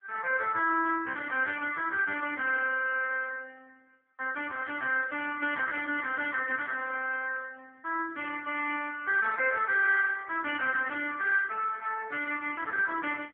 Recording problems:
telephone audio; 280 Hz to 2.9 kHz, AMR-NB

